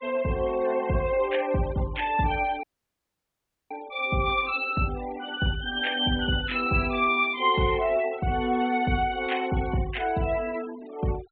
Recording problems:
treble cut off; nothing above 4 kHz
noise reduction artefacts; signal-to-artefact ratio 19 dB
audio cutting out; at 2.5 s for 1 s

